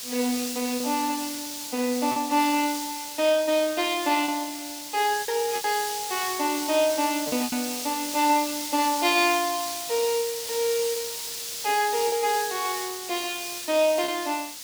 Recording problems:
background hiss; SNR 6 dB
packet loss; 4% of the sound replaced, filled with repeated pitch periods

